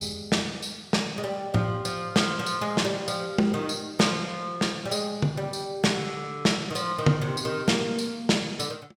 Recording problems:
none

